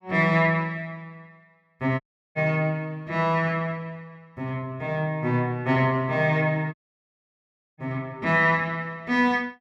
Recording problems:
audio cutting out; at 2 s and at 6.5 s for 1 s

